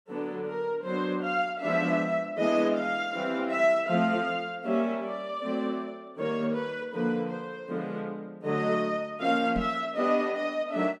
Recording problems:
knock on the microphone; at 9.5 s; peak -1 dB vs average level

